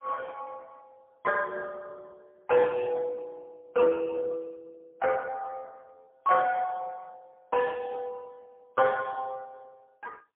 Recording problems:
telephone audio; 340 Hz to 2.1 kHz, AMR-NB, then MP3

